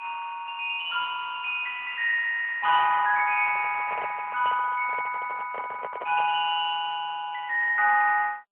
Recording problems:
phone line; 240 Hz to 2.5 kHz, AMR-NB
microphone handling noise; from 3.5 to 6.5 s; peak -7 dB vs average level

